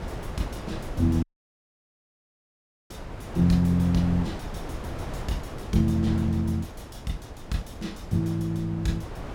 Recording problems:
wind on the microphone; below 580 Hz, SNR 11 dB
dropout; at 1 s for 1.5 s

